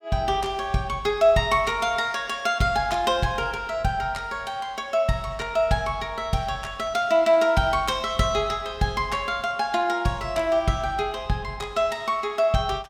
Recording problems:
none

